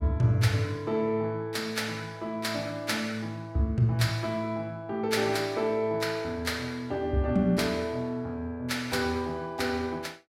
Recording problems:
none

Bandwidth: 16 kHz